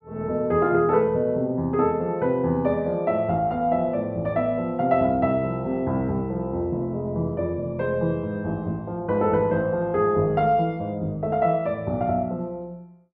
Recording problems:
none

